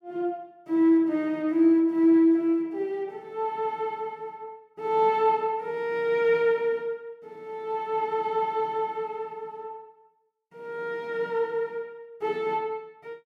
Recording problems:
none

